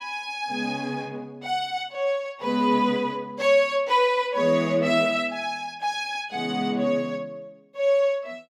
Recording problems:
none

